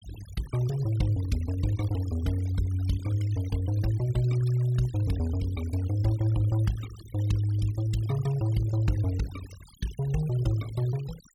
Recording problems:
noise reduction artefacts; signal-to-artefact ratio 19 dB

